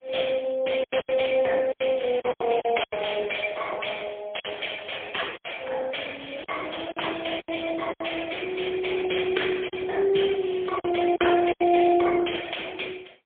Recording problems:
telephone audio; 300 Hz to 3.4 kHz, AMR-NB, then MP3
lost packets; 8% of the sound replaced, filled with silence

